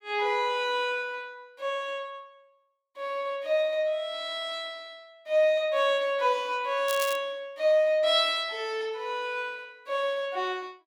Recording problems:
crackling; at 7 s; loose cable, SNR 11 dB

